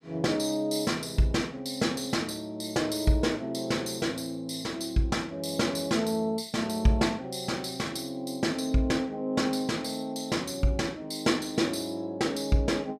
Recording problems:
none

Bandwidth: 15 kHz